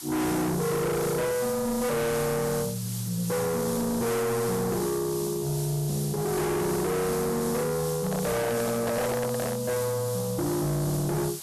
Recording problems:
distorted audio; soft clipping, signal-to-distortion ratio 6 dB
hiss; SNR 9 dB
handling noise; from 8 to 9.5 s; peak +2 dB vs average level

